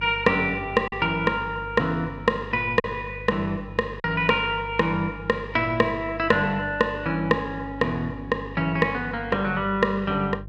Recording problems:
electrical hum; 50 Hz, harmonics up to 500 Hz, SNR 16 dB
lost packets; 1.1% of the sound replaced, filled with silence

